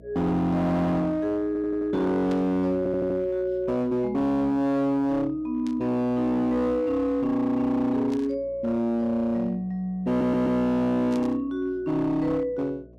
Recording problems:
distortion; hard clipping, uneven, signal-to-distortion ratio 11 dB
hum; 60 Hz, harmonics up to 660 Hz, SNR 25 dB
audio stuttering; at 1.5 s, at 3 s and at 10 s
static burst; 4 times, first at 2.5 s; peak -14 dB vs average level

